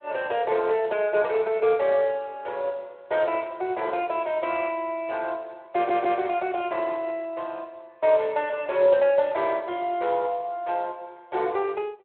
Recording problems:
telephone audio; 340 Hz to 3.3 kHz, Speex
stutter; at 6 s

